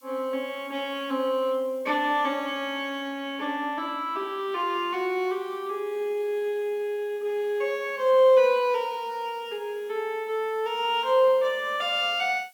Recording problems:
background hiss; slope +5 dB per octave, SNR 30 dB

